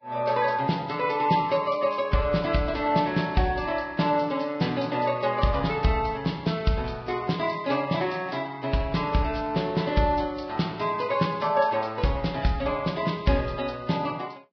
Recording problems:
lossy codec; Vorbis, log-spectral distance 4 dB, nothing above 5.2 kHz

